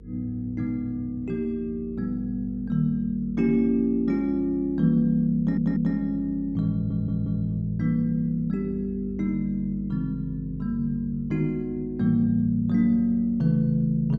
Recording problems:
hum; 50 Hz, harmonics up to 500 Hz, SNR 18 dB
audio stuttering; at 5.5 s and at 6.5 s

